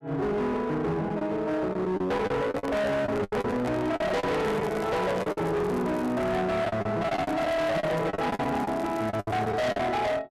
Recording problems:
distorted audio; hard clipping, uneven, signal-to-distortion ratio 6 dB
lost packets; 10% of the sound replaced, filled with the last packet
microphone handling noise; from 2.5 to 5.5 s; peak 0 dB vs average level
crackling; from 4.5 to 6.5 s and from 7 to 9.5 s; loose cable, SNR 24 dB

